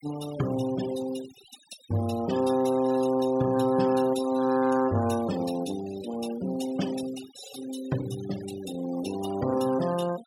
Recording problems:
denoising artefacts; signal-to-artefact ratio 14 dB

